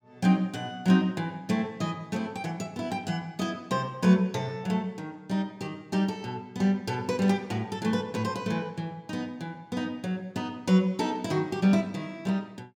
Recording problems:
none

